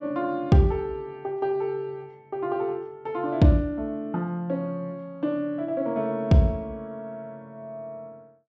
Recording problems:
low-pass filter; nothing above 8 kHz

